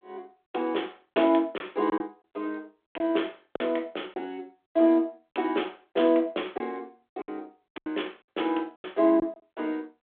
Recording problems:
telephone audio; 280 Hz to 3.5 kHz, G.726
packet loss; 6% of the sound replaced, filled with silence

